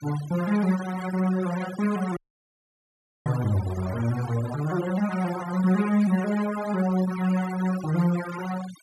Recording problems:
noise reduction artefacts; signal-to-artefact ratio 14 dB
dropout; at 2 s for 1 s

